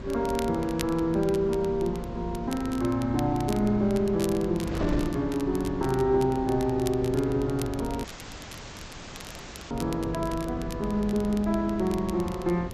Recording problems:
lossy codec; G.722, log-spectral distance 2 dB
mains hum; 50 Hz, harmonics up to 450 Hz, SNR 16 dB
wind on the microphone; below 380 Hz, SNR 12 dB
crackle; vinyl, SNR 18 dB
dropout; at 8 s for 1.5 s

